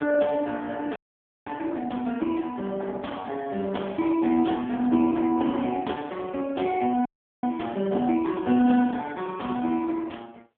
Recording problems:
telephone audio; 220 Hz to 3.4 kHz, AMR-NB
frozen audio; at 1 s for 0.5 s and at 7 s

